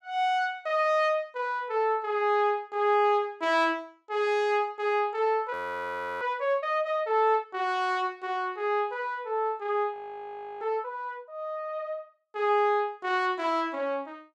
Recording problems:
audio freezing; at 5.5 s for 0.5 s and at 10 s for 0.5 s

